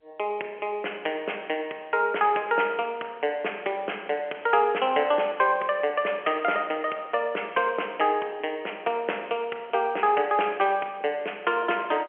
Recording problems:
telephone audio; 320 Hz to 3.2 kHz, G.711

